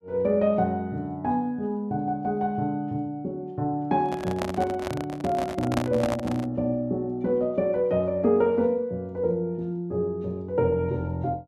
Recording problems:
handling noise; from 4 to 6.5 s; peak +3 dB vs average level

